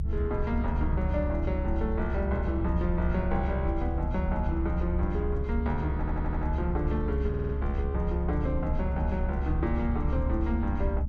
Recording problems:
low-frequency rumble; below 70 Hz, strongest tone 68 Hz, SNR -1 dB
audio stuttering; at 6 s and at 7.5 s

